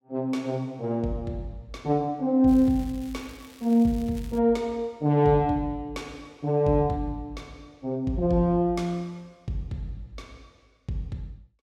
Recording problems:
crackling; from 2.5 to 4.5 s; loose cable, SNR 25 dB

